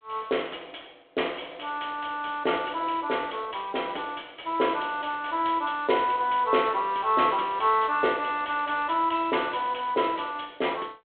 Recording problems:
telephone audio; 280 Hz to 3.5 kHz, G.726

